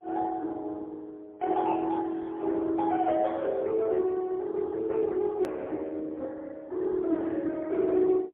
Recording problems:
telephone audio; 280 Hz to 2.6 kHz, AMR-NB, then MP3
hard cut with a click; at 5.5 s

